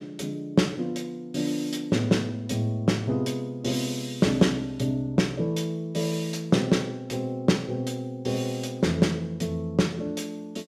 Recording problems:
none

